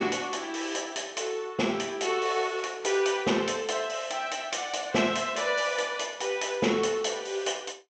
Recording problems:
treble missing; nothing above 8 kHz

